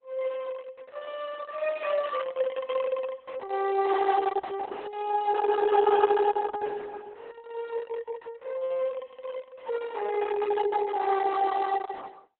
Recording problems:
lossy codec; Opus, log-spectral distance 4 dB, nothing above 3.8 kHz

